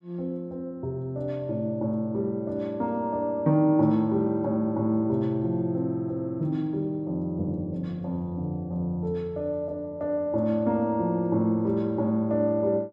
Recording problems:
none

